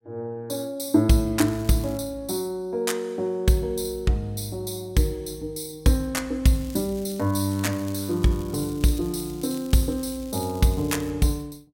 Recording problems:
crackling; at 1.5 s and from 6.5 to 11 s; loose cable, SNR 21 dB

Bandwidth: 16.5 kHz